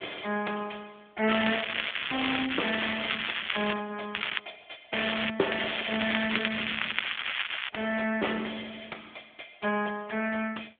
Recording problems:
phone line; 340 Hz to 3.4 kHz, AMR-NB
distorted audio; soft clipping, signal-to-distortion ratio 16 dB
crackle; 4 times, first at 1.5 s; loose cable, SNR 0 dB

